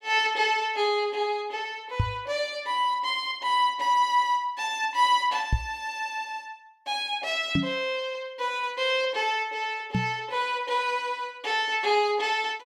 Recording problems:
microphone thump; 4 times, first at 2 s; peak +5 dB vs average level

